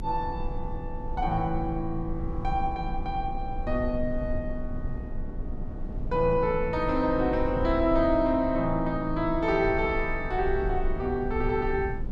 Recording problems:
low-frequency rumble; below 60 Hz, strongest tone 22 Hz, SNR 9 dB
wind noise; below 270 Hz, SNR 14 dB

